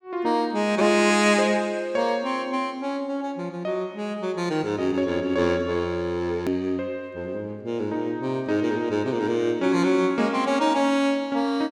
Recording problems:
click at an edit; at 6.5 s

